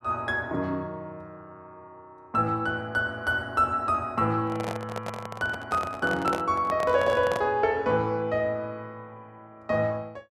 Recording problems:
microphone handling noise; from 4.5 to 7.5 s; peak 0 dB vs average level

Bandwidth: 13 kHz